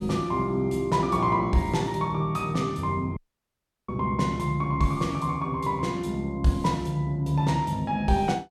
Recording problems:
dropout; at 3 s for 0.5 s

